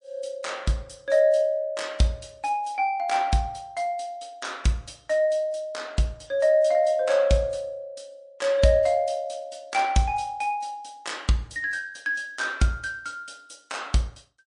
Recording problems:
codec artefacts; MP3, log-spectral distance 3 dB

